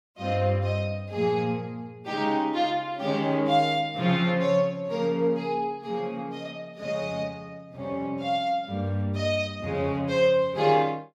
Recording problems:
none

